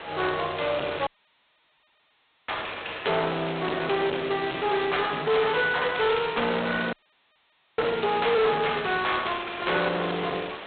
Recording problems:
telephone audio; 340 Hz to 3.8 kHz, G.726
distorted audio; hard clipping, signal-to-distortion ratio 8 dB
hiss; SNR 14 dB
dropout; at 1 s for 1.5 s and at 7 s for 1 s

